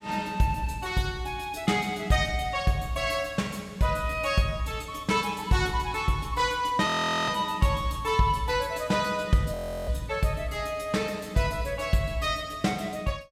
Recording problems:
frozen audio; at 7 s and at 9.5 s

